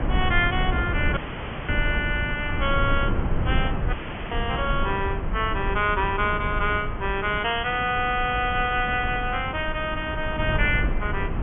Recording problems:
treble missing; nothing above 3.3 kHz
background hiss; SNR 12 dB
wind noise; below 140 Hz, SNR 4 dB
dropout; at 1 s for 0.5 s and at 4 s

